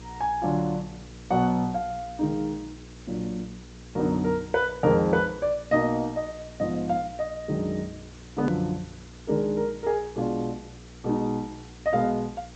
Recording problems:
treble missing; nothing above 8 kHz
hum; 60 Hz, harmonics up to 480 Hz, SNR 19 dB
background hiss; slope -1 dB per octave, SNR 23 dB
edit click; at 8.5 s

